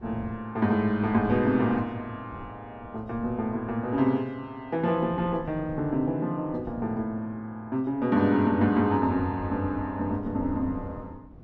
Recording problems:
wind on the microphone; below 260 Hz, SNR 18 dB

